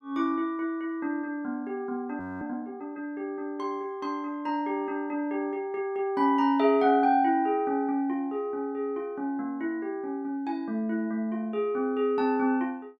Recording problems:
frozen audio; at 2 s

